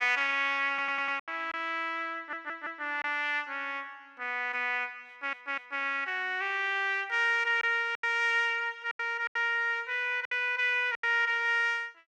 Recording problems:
lost packets; 5% of the sound replaced, filled with silence
stutter; at 0.5 s, at 2 s and at 5 s

